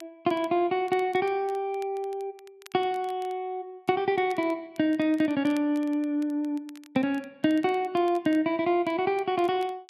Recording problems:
crackling; vinyl, SNR 27 dB

